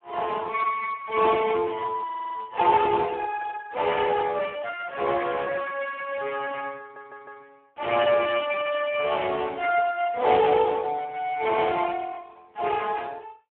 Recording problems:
phone line; 300 Hz to 2.9 kHz, Speex
audio stuttering; at 2 s and at 7 s

